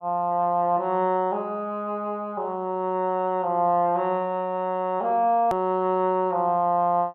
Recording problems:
edit click; at 5.5 s

